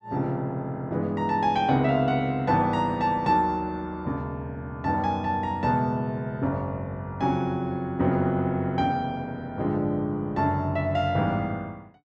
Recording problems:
none

